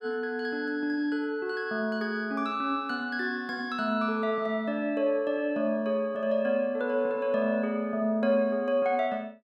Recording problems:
none

